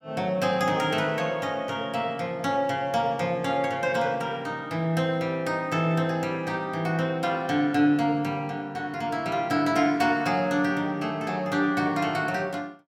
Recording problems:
none

